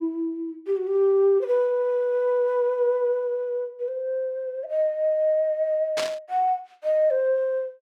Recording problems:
burst of static; at 6 s; peak -1 dB vs average level

